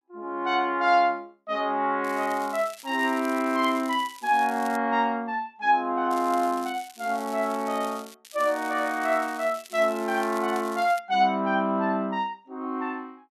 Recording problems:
crackling; from 2 to 5 s, from 6 to 8 s and from 8.5 to 11 s; loose cable, SNR 19 dB

